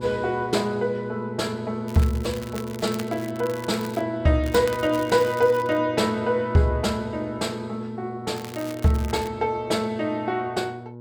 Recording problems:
electrical hum; 60 Hz, harmonics up to 1.1 kHz, SNR 13 dB
crackle; from 2 to 4 s, from 4.5 to 6 s and at 8.5 s; loose cable, SNR 17 dB

